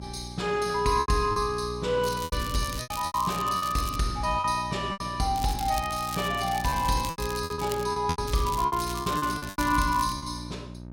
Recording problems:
electrical hum; 60 Hz, harmonics up to 960 Hz, SNR 12 dB
lost packets; 11% of the sound replaced, filled with repeated pitch periods
crackle; from 2 to 4 s, from 5.5 to 8 s and from 8.5 to 10 s; loose cable, SNR 12 dB

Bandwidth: 16.5 kHz